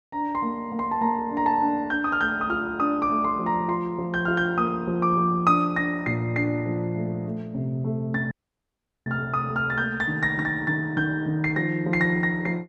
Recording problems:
dropout; at 8.5 s for 1 s

